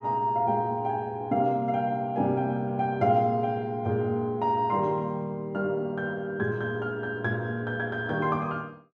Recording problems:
none

